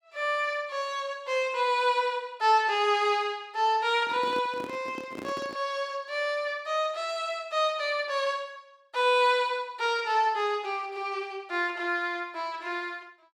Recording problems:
microphone handling noise; from 4 to 5.5 s; peak -7 dB vs average level

